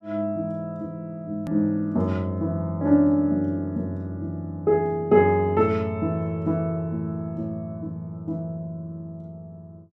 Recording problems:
click at an edit; at 1.5 s

